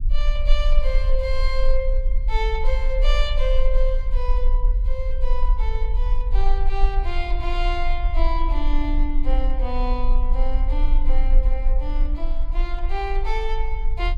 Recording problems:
rumble; below 38 Hz, strongest tone 20 Hz, SNR -6 dB

